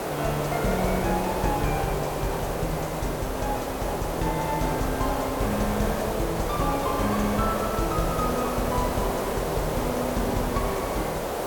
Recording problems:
hiss; SNR 0 dB

